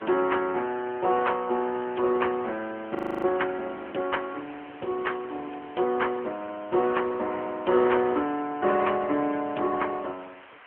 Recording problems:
telephone audio; 260 Hz to 3.1 kHz, AMR-NB
hiss; SNR 21 dB
audio freezing; at 3 s

